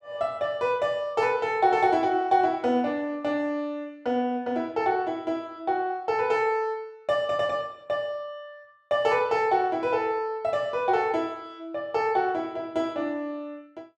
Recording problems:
none

